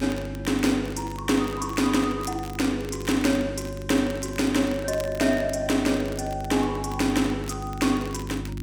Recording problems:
hum; 50 Hz, harmonics up to 350 Hz, SNR 10 dB
crackling; vinyl, SNR 20 dB

